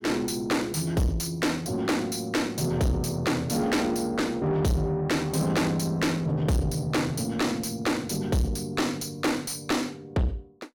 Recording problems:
distorted audio; soft clipping, signal-to-distortion ratio 6 dB

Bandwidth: 17 kHz